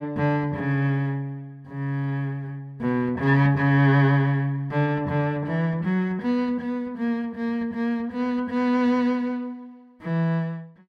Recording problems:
none

